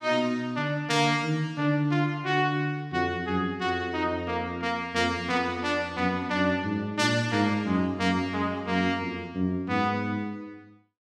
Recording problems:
none

